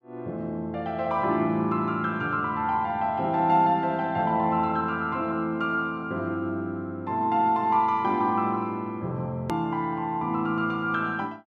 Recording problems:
hard cut with a click; at 9.5 s

